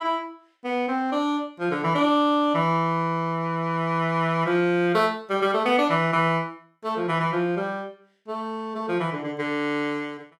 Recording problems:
none

